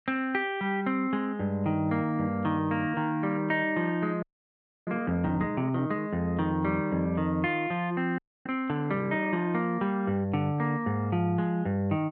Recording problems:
frozen audio; at 4 s for 0.5 s and at 8 s

